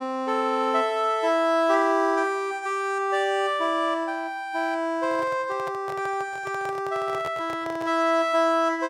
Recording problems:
microphone handling noise; from 5 to 8 s; peak -8 dB vs average level

